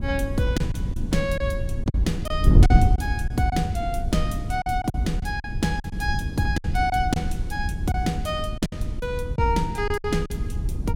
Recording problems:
wind on the microphone; below 110 Hz, SNR 0 dB
lost packets; 8% of the sound replaced, filled with silence

